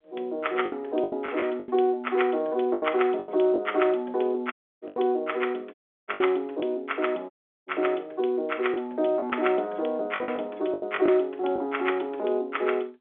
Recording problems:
phone line; 280 Hz to 3.5 kHz, G.711
packet loss; 9% of the sound replaced, filled with the last packet
dropout; at 4.5 s, at 5.5 s and at 7.5 s

